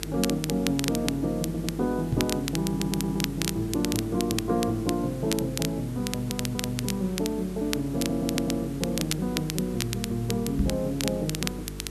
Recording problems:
electrical hum; 50 Hz, harmonics up to 450 Hz, SNR 12 dB
background hiss; slope -3 dB per octave, SNR 18 dB
crackle; vinyl, SNR 6 dB
stutter; 4 times, first at 1.5 s
microphone bump; at 2 s and at 11 s; peak +5 dB vs average level

